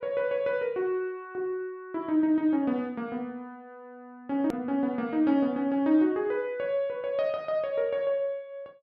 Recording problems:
hard cut with a click; at 4.5 s

